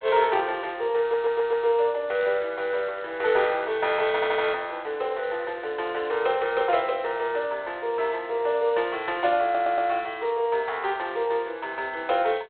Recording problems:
phone line; 370 Hz to 3.3 kHz, G.726
stutter; at 1 s, at 4 s and at 9.5 s

